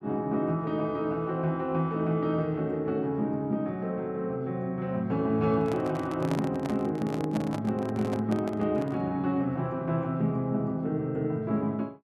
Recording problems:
microphone handling noise; from 5.5 to 9 s; peak -2 dB vs average level

